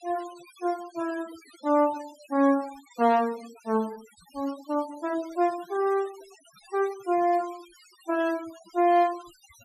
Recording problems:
denoising artefacts; signal-to-artefact ratio 20 dB

